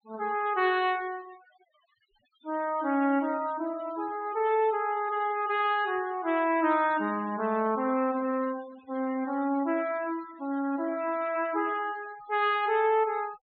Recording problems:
treble cut off; nothing above 4.2 kHz
denoising artefacts; signal-to-artefact ratio 21 dB

